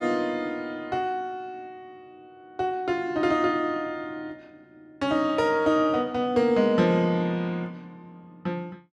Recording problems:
none

